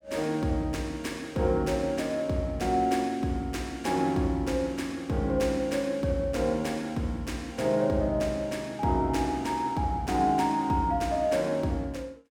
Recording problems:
none

